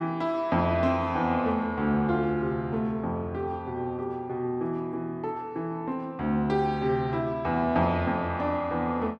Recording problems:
none

